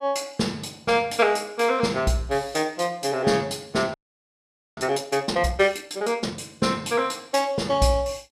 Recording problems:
frozen audio; at 4 s for 1 s

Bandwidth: 14.5 kHz